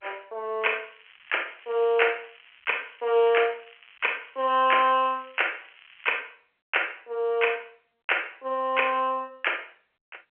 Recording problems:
telephone audio; 320 Hz to 3.2 kHz, G.711
crackling; from 0.5 to 6 s; loose cable, SNR 25 dB

